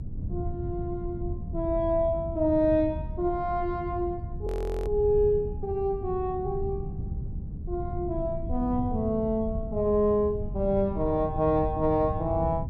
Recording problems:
rumble; below 110 Hz, SNR 11 dB
wind on the microphone; below 130 Hz, SNR 10 dB
frozen audio; at 4.5 s

